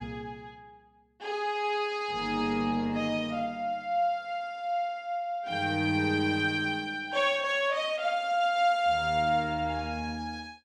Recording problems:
none

